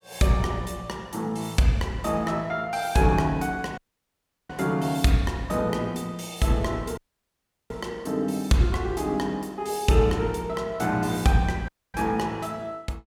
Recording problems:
audio cutting out; at 4 s for 0.5 s, at 7 s for 0.5 s and at 12 s

